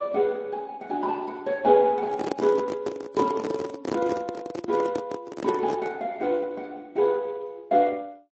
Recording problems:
lossy compression; Speex, then MP3, log-spectral distance 3 dB, nothing above 7.3 kHz
microphone handling noise; from 2 to 6 s; peak +2 dB vs average level

